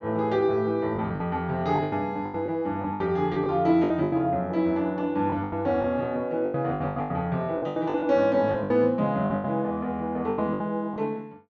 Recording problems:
treble missing; nothing above 8 kHz
packet loss; 13% of the sound replaced, filled with the last packet

